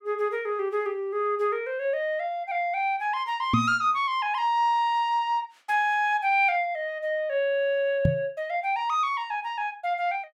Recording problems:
knock on the microphone; at 3.5 s and at 8 s; peak +6 dB vs average level

